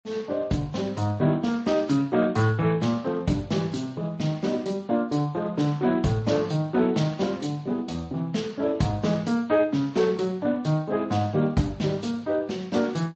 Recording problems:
lossy codec; Speex, then MP3, log-spectral distance 3 dB, nothing above 7.6 kHz

